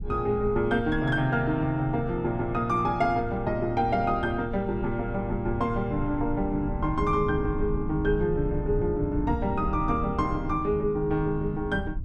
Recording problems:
low-frequency rumble; below 100 Hz, SNR 9 dB

